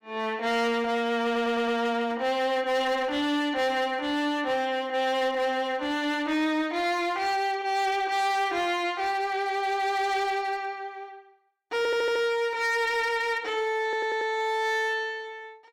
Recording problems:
distorted audio; hard clipping, uneven, signal-to-distortion ratio 11 dB
audio stuttering; at 1.5 s, at 12 s and at 14 s

